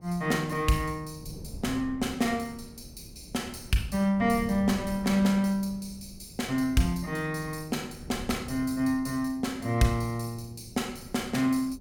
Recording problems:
wind on the microphone; below 200 Hz, SNR 17 dB

